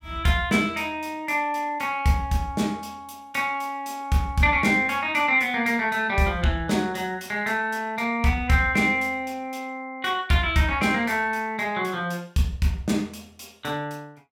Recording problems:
none

